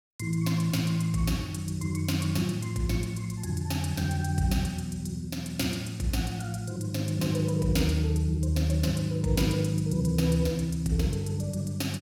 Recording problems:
none

